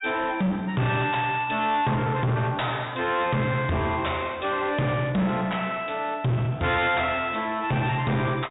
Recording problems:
low-pass filter; nothing above 4 kHz
distortion; soft clipping, signal-to-distortion ratio 8 dB

